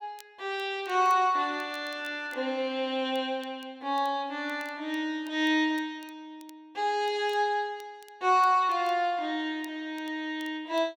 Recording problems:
crackling; vinyl, SNR 28 dB

